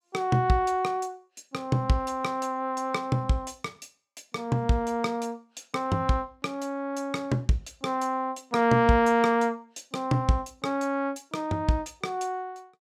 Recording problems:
none

